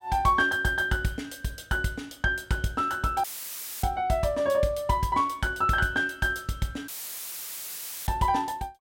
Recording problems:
dropout; at 3 s for 0.5 s and at 7 s for 1 s; filled with static

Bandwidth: 16.5 kHz